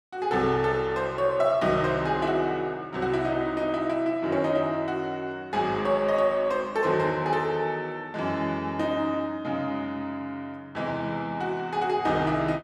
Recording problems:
none

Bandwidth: 13.5 kHz